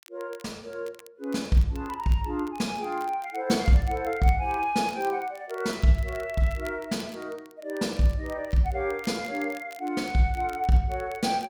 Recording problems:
crackling; vinyl, SNR 24 dB

